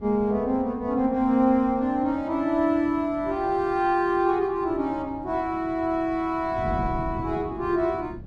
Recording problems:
wind on the microphone; below 240 Hz, SNR 15 dB

